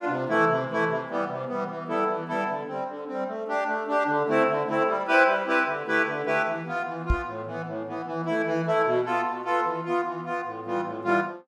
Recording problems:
microphone bump; at 7 s; peak +4 dB vs average level

